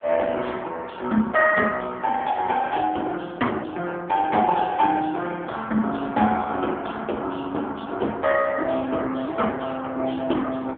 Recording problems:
telephone audio; 240 Hz to 3.4 kHz, AMR-NB

